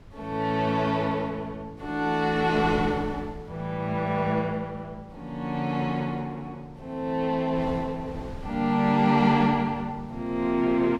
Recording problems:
wind noise; below 260 Hz, SNR 18 dB

